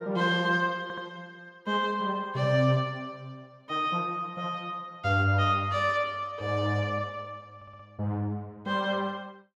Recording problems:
stutter; at 1 s and at 7.5 s

